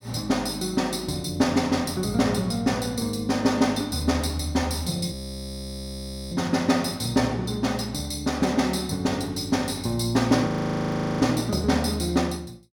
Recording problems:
audio freezing; at 5 s for 1 s and at 10 s for 1 s

